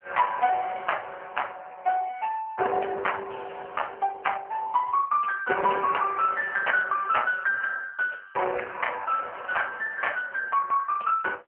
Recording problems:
phone line; 340 Hz to 3 kHz, AMR-NB

